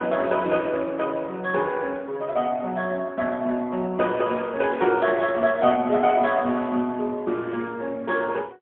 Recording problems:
telephone audio; 190 Hz to 3.4 kHz, AMR-NB, then MP3

